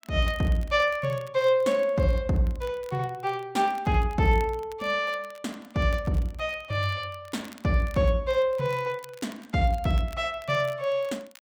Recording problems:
crackle; vinyl, SNR 26 dB

